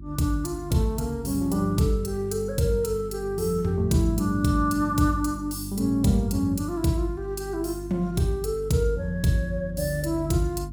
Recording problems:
mains hum; 50 Hz, harmonics up to 350 Hz, SNR 14 dB

